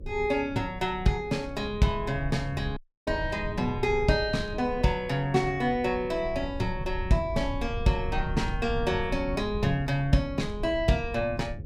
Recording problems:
electrical hum; 50 Hz, harmonics up to 600 Hz, SNR 20 dB
rumble; below 98 Hz, SNR 10 dB
audio cutting out; at 3 s

